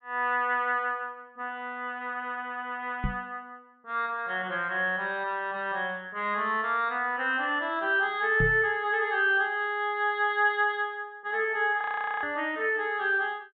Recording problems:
low-pass filter; nothing above 4 kHz
knock on the microphone; at 3 s, at 8.5 s and at 12 s; peak +1 dB vs average level
frozen audio; at 12 s

